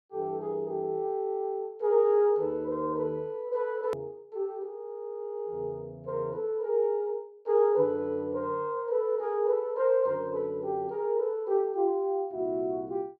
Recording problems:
hard cut with a click; at 4 s

